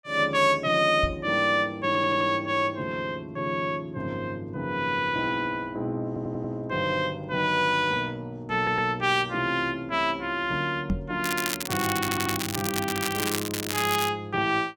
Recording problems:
knock on the microphone; at 1 s and at 11 s; peak +3 dB vs average level
stutter; 4 times, first at 2 s
crackling; from 11 to 14 s; loose cable, SNR 4 dB

